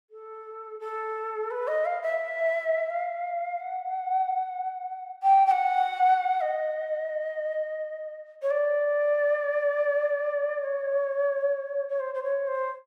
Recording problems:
none

